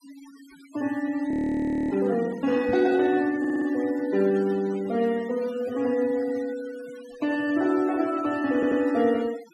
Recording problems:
denoising artefacts; signal-to-artefact ratio 20 dB
audio freezing; at 1.5 s for 0.5 s
microphone thump; at 2.5 s; peak -6 dB vs average level
stutter; at 3.5 s and at 8.5 s

